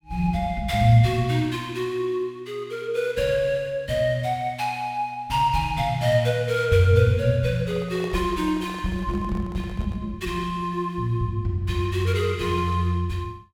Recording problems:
handling noise; from 7.5 to 10 s; peak -10 dB vs average level

